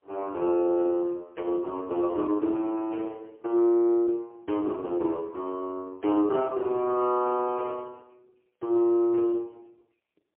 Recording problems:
telephone audio; 280 Hz to 3.3 kHz, AMR-NB, then MP3

